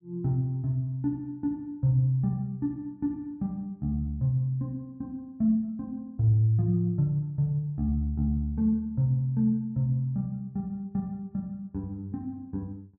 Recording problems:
none

